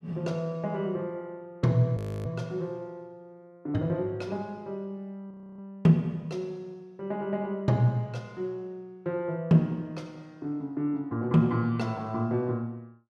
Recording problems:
audio freezing; at 2 s and at 5.5 s

